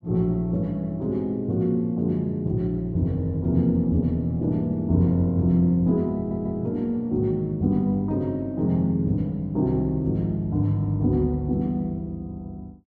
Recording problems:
stutter; at 6 s

